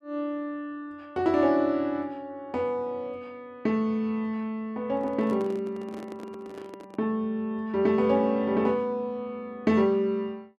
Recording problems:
handling noise; from 5 to 7 s; peak -8 dB vs average level

